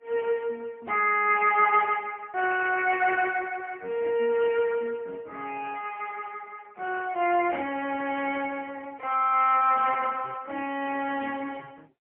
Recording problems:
phone line; 300 Hz to 2.9 kHz, AMR-NB, then MP3

